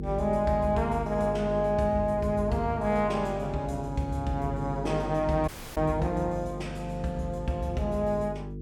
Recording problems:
mains hum; 50 Hz, harmonics up to 450 Hz, SNR 8 dB
dropout; at 5.5 s

